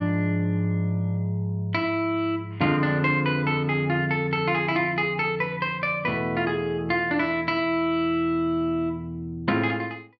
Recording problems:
none

